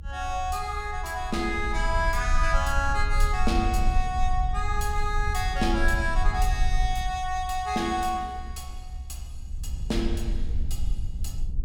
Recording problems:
low-frequency rumble; below 60 Hz, SNR 3 dB

